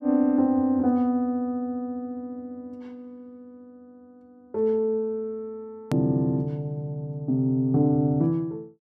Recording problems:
hard cut with a click; at 6 s

